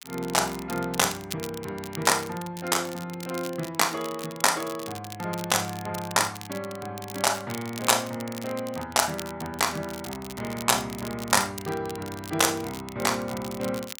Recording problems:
crackle; vinyl, SNR 14 dB

